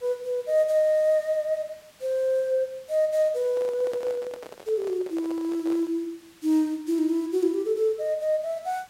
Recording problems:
background hiss; slope -1 dB per octave, SNR 28 dB
microphone handling noise; from 3.5 to 6 s; peak -9 dB vs average level

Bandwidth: 16 kHz